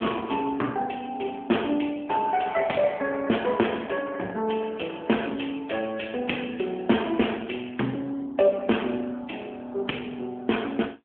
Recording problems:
phone line; 170 Hz to 3.3 kHz, AMR-NB

